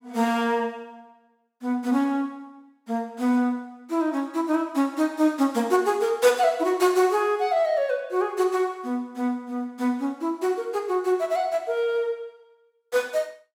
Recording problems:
none

